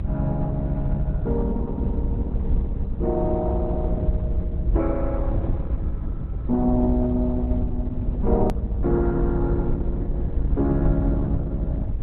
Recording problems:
lossy compression; Opus, log-spectral distance 2 dB
rumble; below 94 Hz, SNR 0 dB
click at an edit; at 8.5 s

